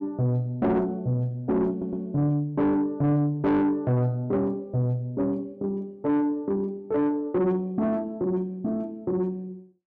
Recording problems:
distorted audio; soft clipping, signal-to-distortion ratio 10 dB
stutter; at 1.5 s

